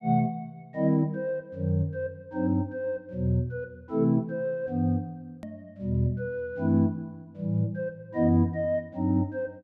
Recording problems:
click at an edit; at 5.5 s

